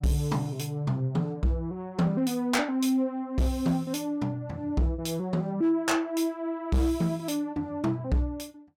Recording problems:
distorted audio; hard clipping, signal-to-distortion ratio 11 dB

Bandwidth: 17.5 kHz